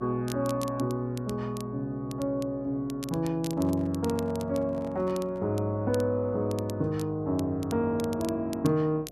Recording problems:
hum; 60 Hz, harmonics up to 720 Hz, SNR 21 dB
crackling; vinyl, SNR 18 dB
handling noise; from 3.5 to 5.5 s; peak -11 dB vs average level

